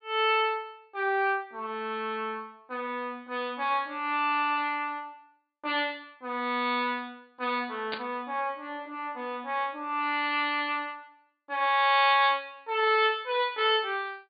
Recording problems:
low-pass filter; nothing above 4.7 kHz
burst of static; at 8 s; peak -2 dB vs average level

